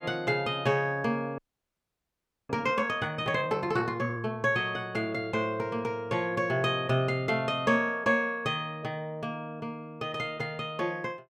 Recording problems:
audio freezing; at 1.5 s for 1 s

